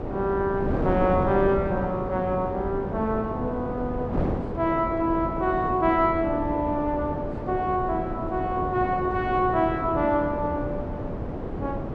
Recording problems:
wind noise; below 490 Hz, SNR 5 dB

